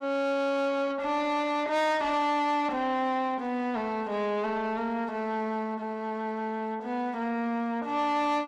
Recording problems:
distorted audio; soft clipping, signal-to-distortion ratio 12 dB

